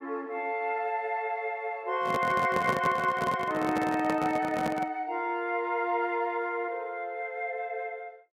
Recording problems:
handling noise; from 2 to 5 s; peak +1 dB vs average level

